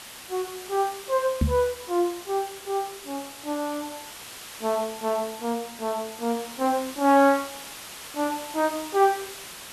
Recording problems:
hiss; slope 0 dB per octave, SNR 12 dB
knock on the microphone; at 1.5 s; peak +6 dB vs average level

